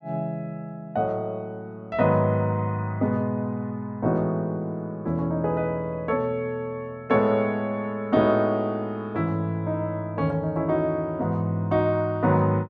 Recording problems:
none

